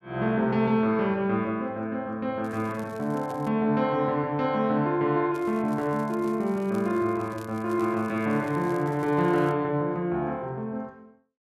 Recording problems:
crackling; from 2.5 to 3.5 s and from 5.5 to 9.5 s; loose cable, SNR 27 dB

